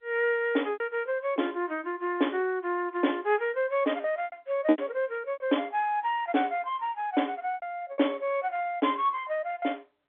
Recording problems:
phone line; 240 Hz to 3.6 kHz, G.711
packet loss; 5% of the sound replaced, filled with repeated pitch periods

